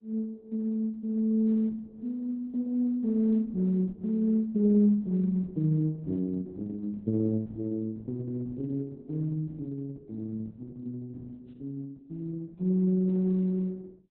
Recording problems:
codec artefacts; Opus, log-spectral distance 2 dB, nothing above 13.1 kHz

